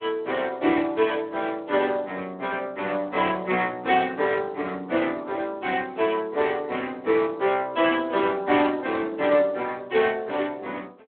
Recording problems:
telephone audio; 280 Hz to 3.6 kHz, Speex

